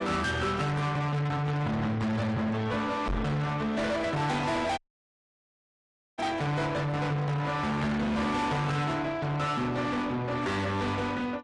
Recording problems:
lossy codec; AAC, log-spectral distance 3 dB, nothing above 10.4 kHz
distortion; soft clipping, signal-to-distortion ratio 6 dB
knock on the microphone; at 3 s; peak +4 dB vs average level
dropout; at 5 s for 1.5 s

